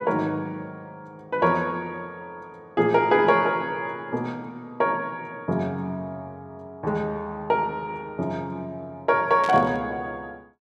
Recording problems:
static burst; at 9.5 s; peak -8 dB vs average level

